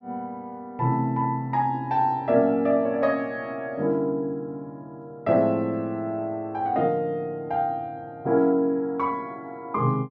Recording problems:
none

